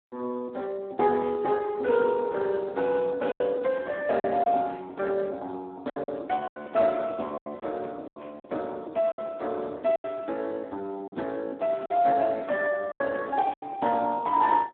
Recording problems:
phone line; 220 Hz to 3.8 kHz, Speex
packet loss; 6% of the sound replaced, filled with silence

